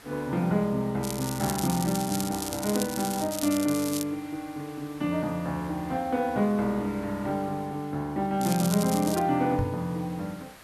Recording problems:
hiss; SNR 21 dB
crackle; from 1 to 4 s and at 8.5 s; loose cable, SNR 7 dB
knock on the microphone; at 9.5 s; peak +3 dB vs average level

